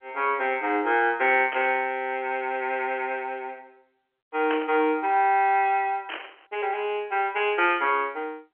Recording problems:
telephone audio; 280 Hz to 3.2 kHz, G.711
static burst; at 1.5 s, at 4.5 s and at 6 s; peak -3 dB vs average level

